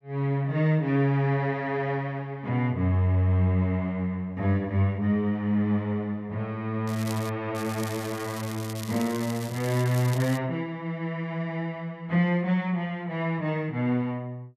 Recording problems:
crackle; at 7 s and from 7.5 to 10 s; loose cable, SNR 14 dB

